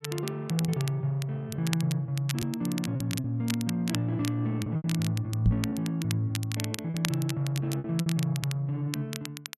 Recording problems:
crackle; vinyl, SNR 10 dB
lost packets; 7% of the sound replaced, filled with repeated pitch periods
microphone bump; at 5.5 s; peak +7 dB vs average level

